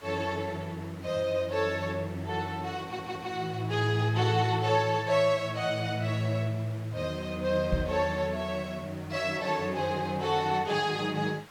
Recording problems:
background hiss; SNR 22 dB
audio stuttering; at 3 s
microphone thump; at 7.5 s; peak +4 dB vs average level

